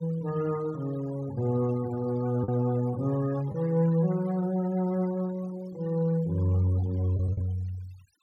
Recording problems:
denoising artefacts; signal-to-artefact ratio 22 dB
packet loss; 1.8% of the sound replaced, filled with the last packet

